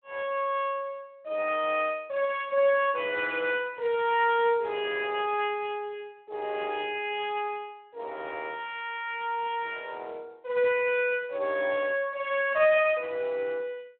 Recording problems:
telephone audio; 240 Hz to 3.4 kHz, Speex

